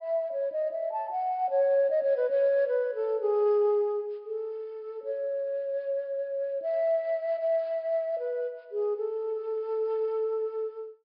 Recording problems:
low-pass filter; nothing above 5.5 kHz

